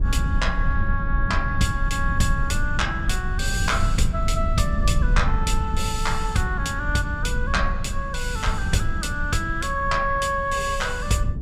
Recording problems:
low-frequency rumble; below 86 Hz, SNR 1 dB

